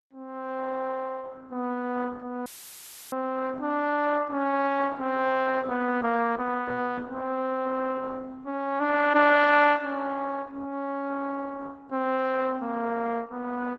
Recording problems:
codec artefacts; Opus, log-spectral distance 3 dB
audio cutting out; at 2.5 s for 0.5 s; filled with static

